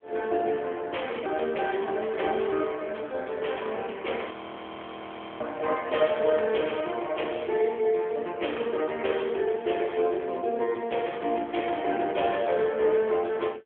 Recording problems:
phone line; 320 Hz to 3.3 kHz, AMR-NB
frozen audio; at 4.5 s for 1 s

